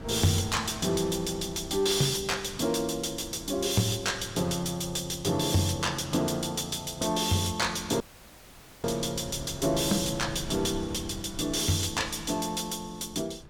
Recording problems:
distorted audio; soft clipping, signal-to-distortion ratio 11 dB
wind noise; below 270 Hz, SNR 17 dB
dropout; at 8 s for 1 s

